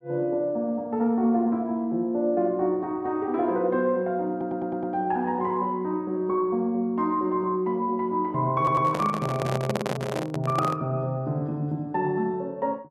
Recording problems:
audio stuttering; at 4.5 s and at 8.5 s
microphone handling noise; from 8.5 to 11 s; peak +1 dB vs average level

